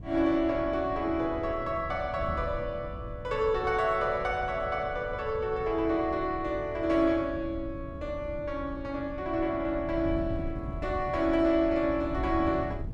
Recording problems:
wind noise; below 140 Hz, SNR 12 dB

